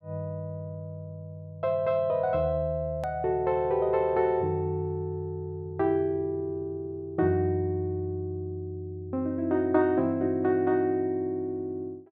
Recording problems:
hard cut with a click; at 3 s

